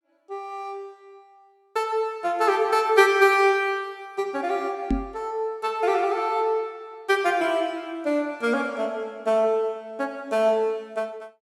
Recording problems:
microphone bump; at 5 s; peak +3 dB vs average level

